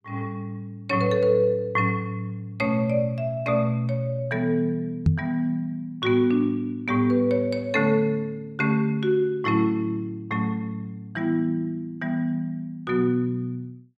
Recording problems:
microphone bump; at 5 s; peak +9 dB vs average level

